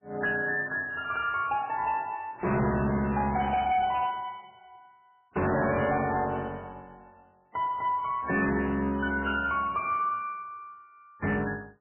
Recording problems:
codec artefacts; MP3, log-spectral distance 3 dB, nothing above 2.4 kHz
distorted audio; hard clipping, signal-to-distortion ratio 11 dB

